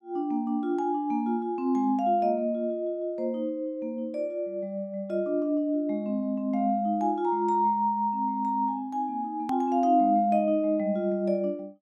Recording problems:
edit click; at 9.5 s

